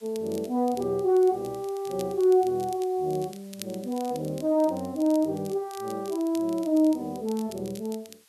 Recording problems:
background hiss; slope +2 dB per octave, SNR 29 dB
crackle; vinyl, SNR 21 dB

